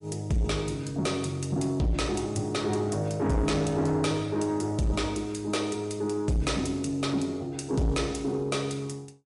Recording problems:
lossy compression; MP3, log-spectral distance 3 dB, nothing above 11 kHz
distortion; soft clipping, signal-to-distortion ratio 10 dB

